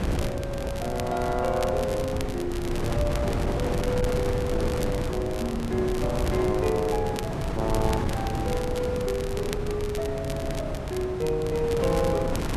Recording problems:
wind on the microphone; below 360 Hz, SNR 2 dB
crackling; vinyl, SNR 13 dB

